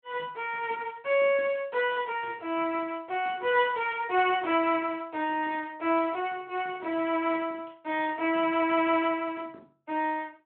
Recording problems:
telephone audio; 260 Hz to 3.4 kHz, Speex

